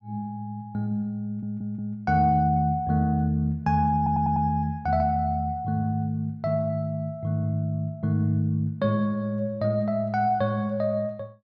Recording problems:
stutter; at 1.5 s and at 4 s

